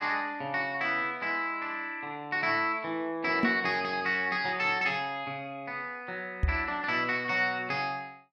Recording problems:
knock on the microphone; at 3.5 s and at 6.5 s; peak +6 dB vs average level

